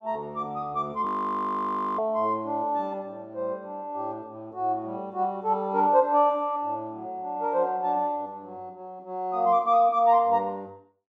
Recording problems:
audio freezing; at 1 s for 1 s

